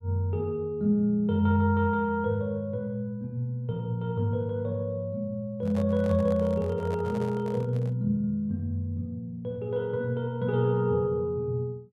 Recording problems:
microphone handling noise; from 5.5 to 8 s; peak -9 dB vs average level

